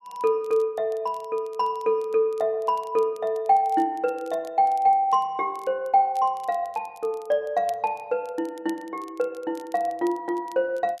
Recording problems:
crackling; vinyl, SNR 29 dB

